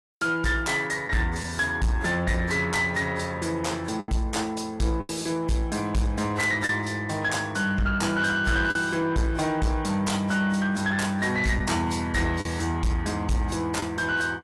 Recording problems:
codec artefacts; AAC, log-spectral distance 3 dB, nothing above 11.3 kHz
distorted audio; soft clipping, signal-to-distortion ratio 11 dB
packet loss; 2% of the sound replaced, filled with the last packet

